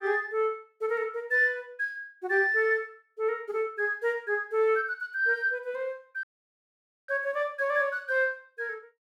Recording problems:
audio cutting out; at 6 s for 1 s

